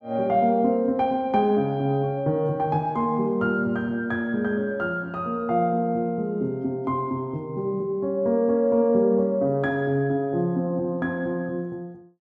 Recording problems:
none

